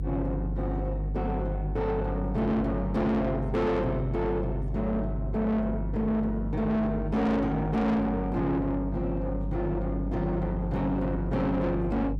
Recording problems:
distorted audio; soft clipping, signal-to-distortion ratio 8 dB
electrical hum; 50 Hz, harmonics up to 350 Hz, SNR 4 dB

